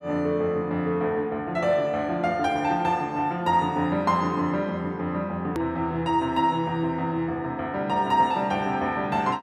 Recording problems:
edit click; at 5.5 s

